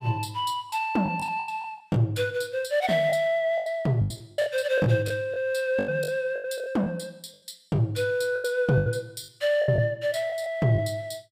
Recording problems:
packet loss; 11% of the sound replaced, filled with the last packet

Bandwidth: 15.5 kHz